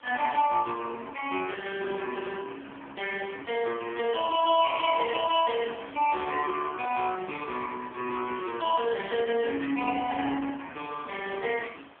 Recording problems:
phone line; 300 Hz to 3.3 kHz, AMR-NB
hiss; SNR 25 dB

